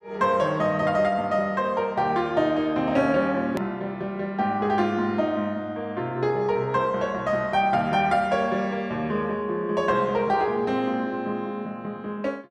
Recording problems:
click at an edit; at 3.5 s

